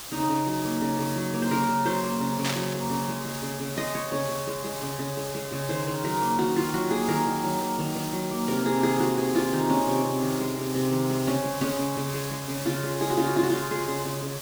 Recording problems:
hiss; slope -1 dB per octave, SNR 8 dB
burst of static; at 2.5 s; peak +2 dB vs average level

